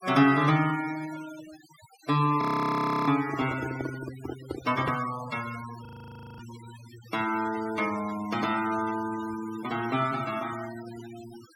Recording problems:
noise reduction artefacts; signal-to-artefact ratio 15 dB
frozen audio; at 2.5 s for 0.5 s and at 6 s for 0.5 s
handling noise; from 3 to 5 s; peak -1 dB vs average level

